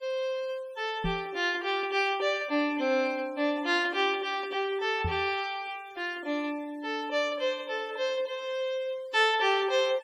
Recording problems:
denoising artefacts; signal-to-artefact ratio 24 dB
microphone bump; at 1 s and at 5 s; peak 0 dB vs average level

